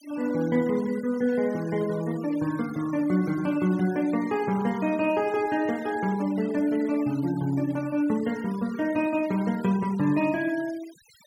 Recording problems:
noise reduction artefacts; signal-to-artefact ratio 21 dB

